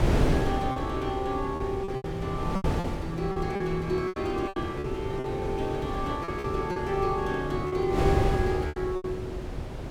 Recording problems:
hum; 50 Hz, harmonics up to 550 Hz, SNR 21 dB
wind on the microphone; below 390 Hz, SNR 2 dB
lost packets; 10% of the sound replaced, filled with repeated pitch periods

